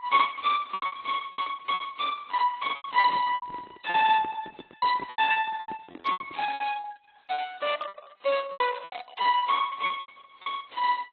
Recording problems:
lossy codec; Opus, then AAC, log-spectral distance 5 dB, nothing above 4 kHz
lost packets; 16% of the sound replaced, filled with repeated pitch periods
microphone handling noise; from 3 to 6.5 s; peak -8 dB vs average level

